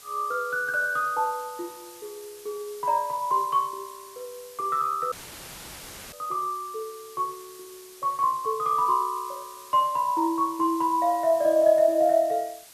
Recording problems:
background hiss; slope +1 dB per octave, SNR 20 dB
audio cutting out; at 5 s for 1 s; filled with static

